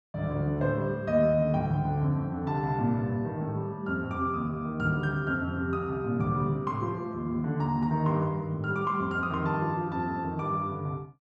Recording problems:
none

